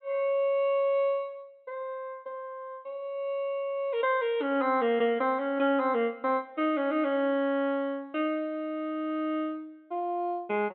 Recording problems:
low-pass filter; nothing above 4.2 kHz

